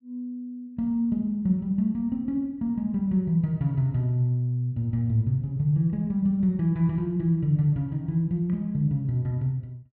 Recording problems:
none

